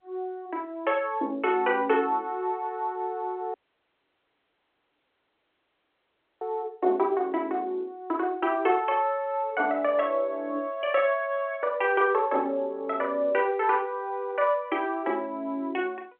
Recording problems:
phone line; 240 Hz to 3.5 kHz, G.711
audio cutting out; at 3.5 s for 3 s

